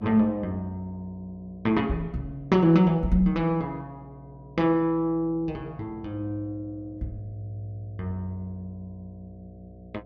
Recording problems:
electrical hum; 60 Hz, harmonics up to 720 Hz, SNR 23 dB

